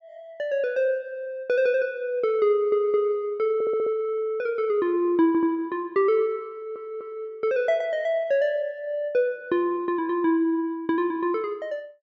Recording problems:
stutter; 4 times, first at 2.5 s

